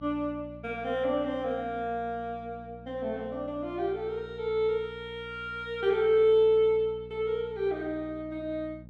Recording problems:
hum; 60 Hz, harmonics up to 600 Hz, SNR 19 dB

